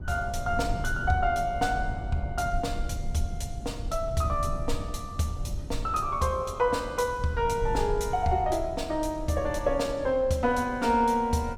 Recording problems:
rumble; below 96 Hz, SNR 9 dB

